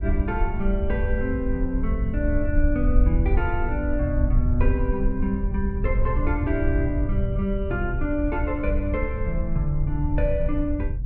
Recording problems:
wind noise; below 70 Hz, SNR -1 dB

